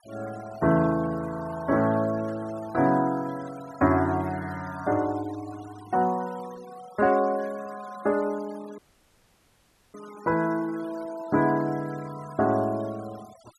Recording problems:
noise reduction artefacts; signal-to-artefact ratio 20 dB
audio cutting out; at 9 s for 1 s

